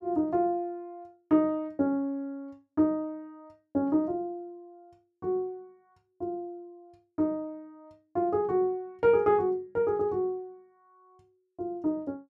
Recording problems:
none

